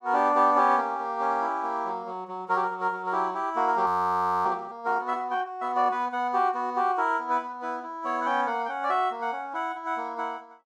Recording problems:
audio freezing; at 4 s for 0.5 s

